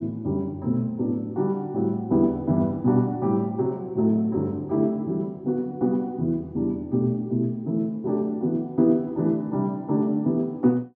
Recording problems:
none

